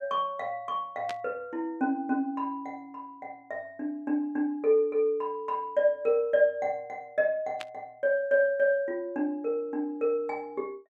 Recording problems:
static burst; at 1 s and at 7.5 s; peak -5 dB vs average level

